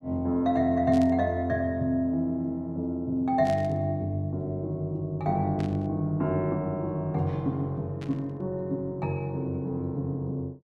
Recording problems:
static burst; 4 times, first at 1 s; peak -11 dB vs average level

